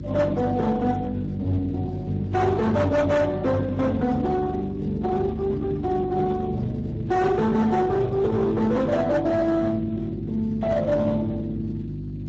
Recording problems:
lossy compression; Vorbis, then Speex, log-spectral distance 2 dB, nothing above 7.6 kHz
distorted audio; hard clipping, signal-to-distortion ratio 10 dB
mains hum; 50 Hz, harmonics up to 350 Hz, SNR 9 dB

